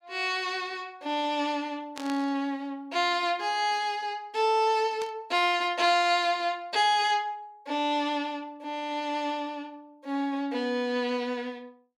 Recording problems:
static burst; at 2 s and at 5 s; peak -8 dB vs average level

